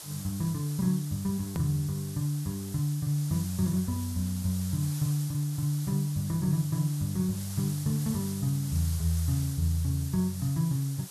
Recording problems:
background hiss; SNR 12 dB
edit click; at 1.5 s

